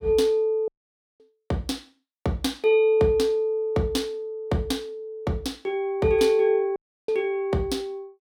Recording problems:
dropout; at 0.5 s for 0.5 s and at 7 s

